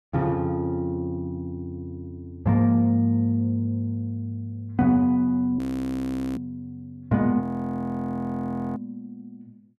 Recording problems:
audio freezing; at 5.5 s for 1 s and at 7.5 s for 1.5 s

